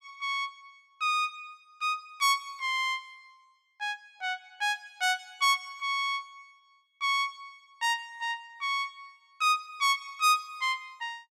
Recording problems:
none

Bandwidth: 14.5 kHz